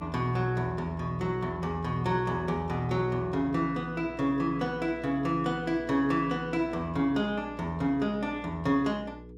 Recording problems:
mains hum; 60 Hz, harmonics up to 480 Hz, SNR 17 dB

